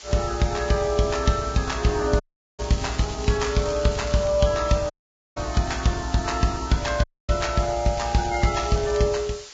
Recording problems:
codec artefacts; Vorbis, log-spectral distance 10 dB, nothing above 7.3 kHz
hiss; slope +2 dB per octave, SNR 16 dB
dropout; at 2 s, at 5 s and at 7 s
crackling; from 2.5 to 4.5 s and from 8 to 9 s; loose cable, SNR 17 dB

